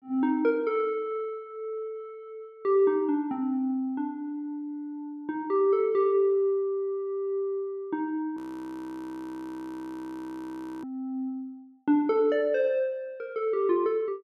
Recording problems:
frozen audio; at 8.5 s for 2.5 s

